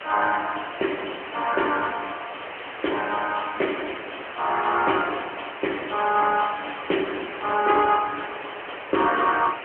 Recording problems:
phone line; 240 Hz to 3.1 kHz, AMR-NB
hiss; SNR 10 dB

